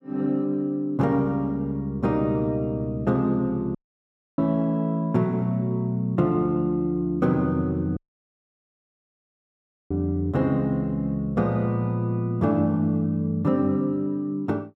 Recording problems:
dropout; at 4 s for 0.5 s and at 8 s for 2 s

